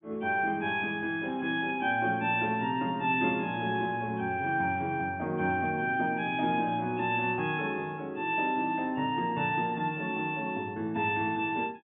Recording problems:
low-pass filter; nothing above 3.5 kHz

